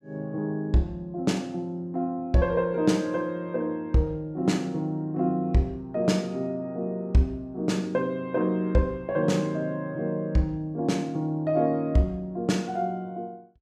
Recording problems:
none

